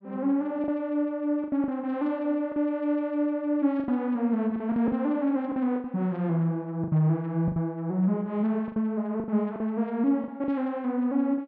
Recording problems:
lost packets; 8% of the sound replaced, filled with the last packet

